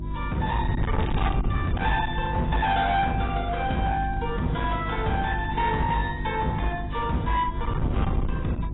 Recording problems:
lossy compression; AAC, log-spectral distance 3 dB, nothing above 3.8 kHz
distorted audio; hard clipping, uneven, signal-to-distortion ratio 8 dB
hum; 50 Hz, harmonics up to 350 Hz, SNR 7 dB
wind noise; below 160 Hz, SNR 5 dB
crackle; at 1 s; loose cable, SNR 15 dB

